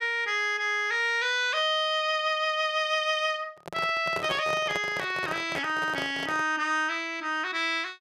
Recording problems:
handling noise; from 3.5 to 6.5 s; peak -4 dB vs average level

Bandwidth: 14 kHz